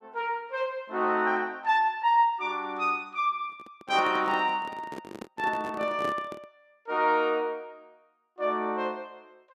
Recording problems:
handling noise; from 3.5 to 6.5 s; peak -5 dB vs average level

